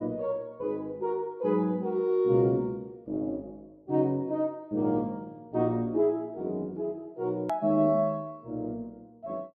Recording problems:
edit click; at 7.5 s

